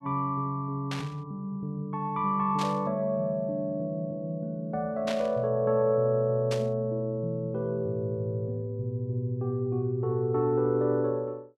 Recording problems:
static burst; 4 times, first at 1 s; peak -3 dB vs average level

